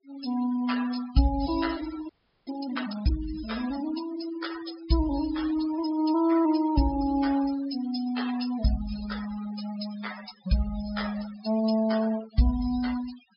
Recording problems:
treble cut off; nothing above 5.5 kHz
noise reduction artefacts; signal-to-artefact ratio 13 dB
audio freezing; at 2 s

